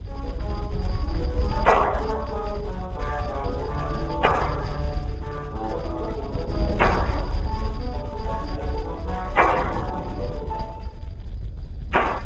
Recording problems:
lossy compression; MP3, then Speex, log-spectral distance 2 dB
low-frequency rumble; below 110 Hz, SNR 6 dB
wind on the microphone; below 470 Hz, SNR 17 dB

